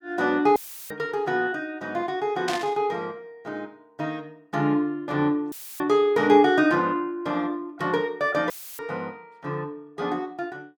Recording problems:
audio cutting out; at 0.5 s, at 5.5 s and at 8.5 s; filled with static
burst of static; at 2.5 s; peak -2 dB vs average level

